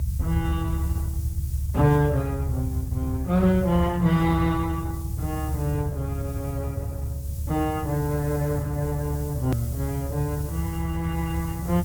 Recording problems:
lossy codec; Opus, log-spectral distance 2 dB, nothing above 19.5 kHz
background hiss; SNR 17 dB
rumble; below 100 Hz, strongest tone 70 Hz, SNR 1 dB
hard cut with a click; at 9.5 s

